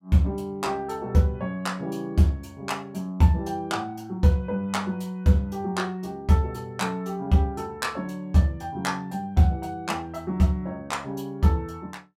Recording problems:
none

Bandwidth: 16 kHz